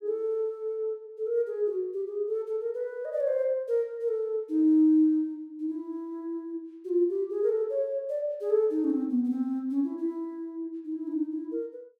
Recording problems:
none

